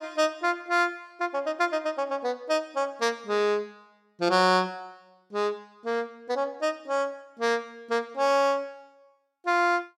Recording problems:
none

